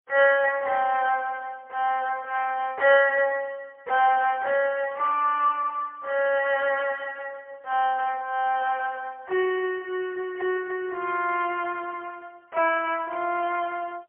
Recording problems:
telephone audio; 370 Hz to 3 kHz, AMR-NB, then MP3

